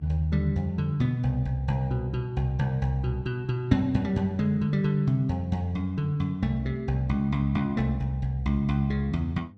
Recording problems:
mains hum; 50 Hz, harmonics up to 500 Hz, SNR 26 dB

